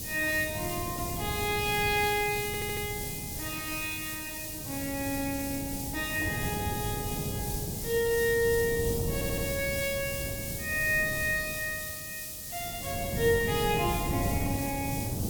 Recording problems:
background hiss; SNR 5 dB
wind on the microphone; below 270 Hz, SNR 6 dB
audio stuttering; at 2.5 s and at 9 s

